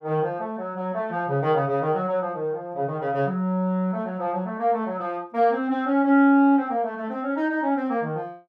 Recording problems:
none

